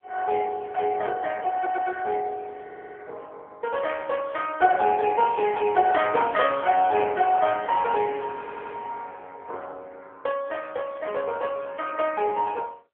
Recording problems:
phone line; 320 Hz to 2.8 kHz, AMR-NB
audio stuttering; at 1.5 s, at 2.5 s and at 8.5 s

